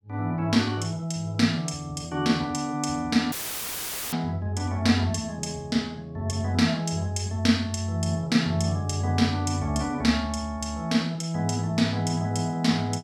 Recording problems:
dropout; at 3.5 s for 1 s; filled with static

